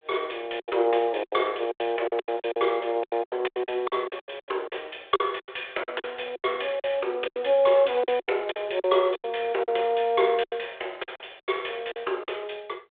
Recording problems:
phone line; 320 Hz to 3.6 kHz, G.726
packet loss; 16% of the sound replaced, filled with silence

